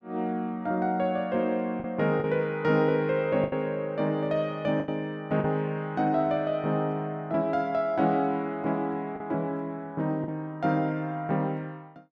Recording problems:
lost packets; 3% of the sound replaced, filled with the last packet

